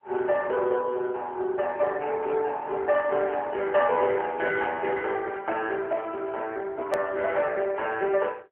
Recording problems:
telephone audio; 320 Hz to 3.3 kHz, AMR-NB
hard cut with a click; at 7 s

